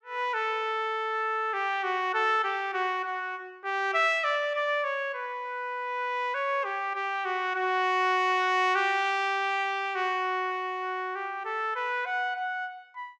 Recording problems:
none

